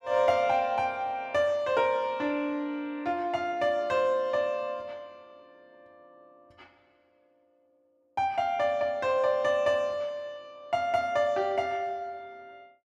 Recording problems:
none

